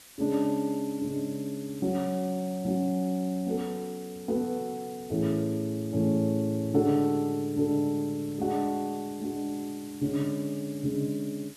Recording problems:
background hiss; slope 0 dB per octave, SNR 20 dB

